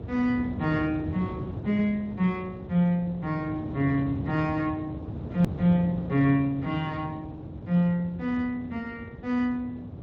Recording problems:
lossy codec; Speex, log-spectral distance 2 dB, nothing above 17.1 kHz
rumble; below 310 Hz, SNR 9 dB
hard cut with a click; at 5.5 s

